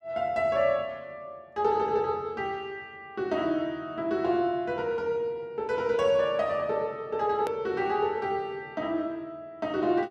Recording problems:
click at an edit; at 7.5 s

